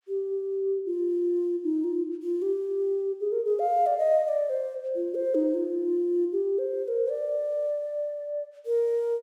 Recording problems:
none

